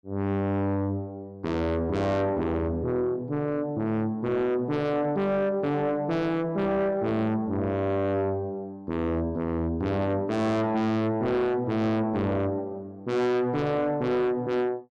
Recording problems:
distortion; soft clipping, signal-to-distortion ratio 6 dB

